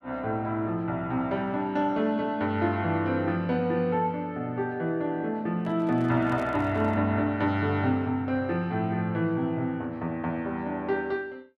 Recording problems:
microphone handling noise; from 5.5 to 7 s; peak -10 dB vs average level

